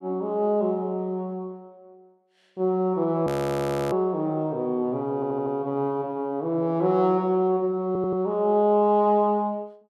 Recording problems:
audio freezing; at 3.5 s for 0.5 s
stutter; at 5 s and at 8 s

